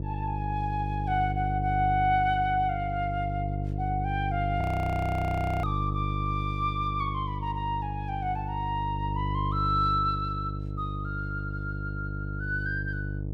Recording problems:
hum; 50 Hz, harmonics up to 600 Hz, SNR 2 dB
frozen audio; at 4.5 s for 1 s

